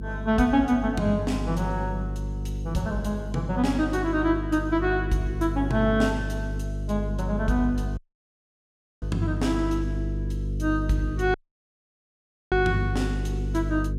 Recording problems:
electrical hum; 50 Hz, harmonics up to 500 Hz, SNR 5 dB
dropout; at 8 s for 1 s and at 11 s for 1 s

